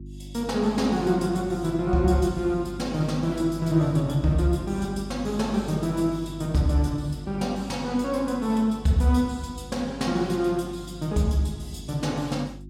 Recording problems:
electrical hum; 50 Hz, harmonics up to 350 Hz, SNR 14 dB

